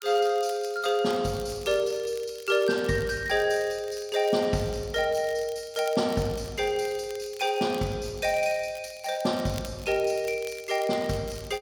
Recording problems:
crackling; vinyl, SNR 20 dB

